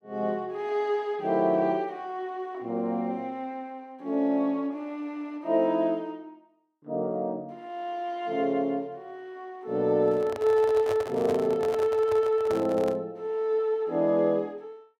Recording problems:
microphone handling noise; from 10 to 13 s; peak -3 dB vs average level

